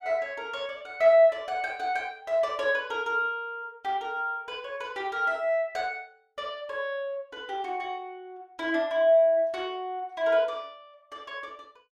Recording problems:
none

